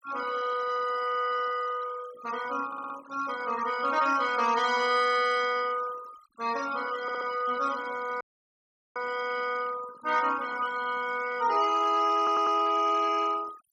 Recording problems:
noise reduction artefacts; signal-to-artefact ratio 15 dB
audio stuttering; at 2.5 s, at 7 s and at 12 s
audio cutting out; at 8 s for 1 s

